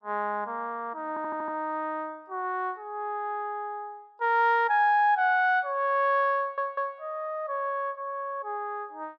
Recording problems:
stutter; at 1 s and at 6.5 s

